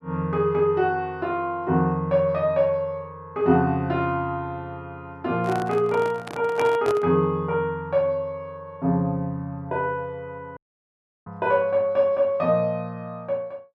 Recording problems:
microphone handling noise; from 5.5 to 7 s; peak -3 dB vs average level
audio cutting out; at 11 s for 0.5 s

